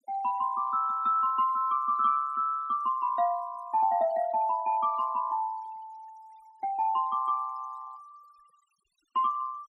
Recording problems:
noise reduction artefacts; signal-to-artefact ratio 26 dB

